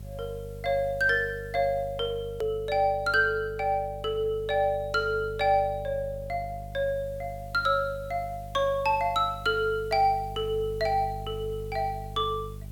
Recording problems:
hum; 50 Hz, harmonics up to 450 Hz, SNR 14 dB
background hiss; slope 0 dB per octave, SNR 30 dB
edit click; at 2.5 s

